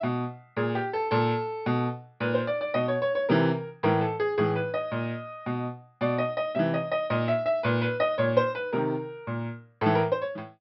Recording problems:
treble cut off; nothing above 5.5 kHz

